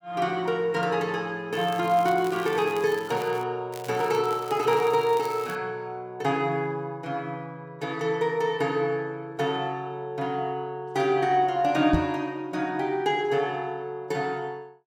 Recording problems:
crackling; from 1.5 to 3.5 s and from 3.5 to 5.5 s; loose cable, SNR 19 dB
knock on the microphone; at 12 s; peak +5 dB vs average level

